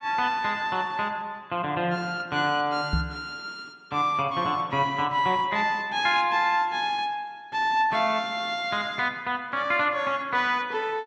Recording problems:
knock on the microphone; at 3 s; peak +3 dB vs average level

